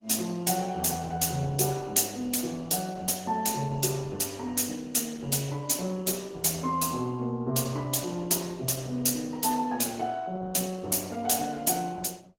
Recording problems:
codec artefacts; Opus, log-spectral distance 5 dB, nothing above 16.5 kHz

